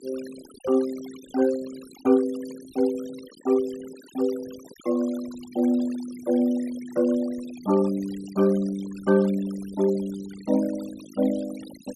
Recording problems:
denoising artefacts; signal-to-artefact ratio 20 dB

